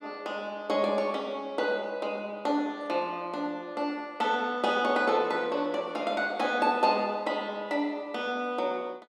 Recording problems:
none

